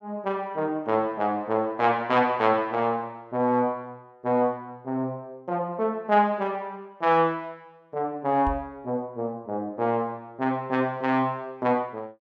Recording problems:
microphone bump; at 8.5 s; peak -3 dB vs average level

